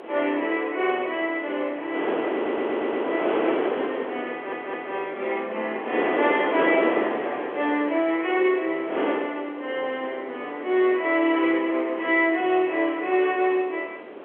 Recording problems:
phone line; 280 Hz to 3.5 kHz, G.711
wind noise; below 760 Hz, SNR 4 dB
audio stuttering; at 2.5 s and at 4.5 s

